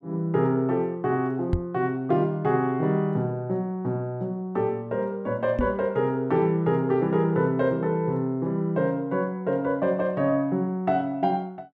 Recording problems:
microphone thump; at 1.5 s and at 5.5 s; peak +4 dB vs average level

